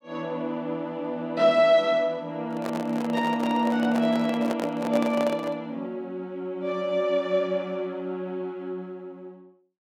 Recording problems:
microphone handling noise; from 2.5 to 5.5 s; peak -1 dB vs average level

